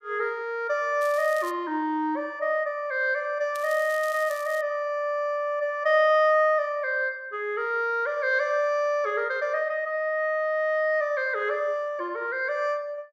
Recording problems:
crackling; at 1 s and from 3.5 to 4.5 s; loose cable, SNR 20 dB

